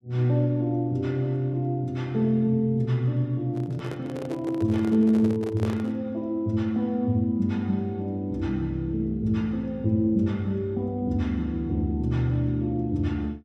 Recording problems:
handling noise; from 3.5 to 6 s; peak -5 dB vs average level

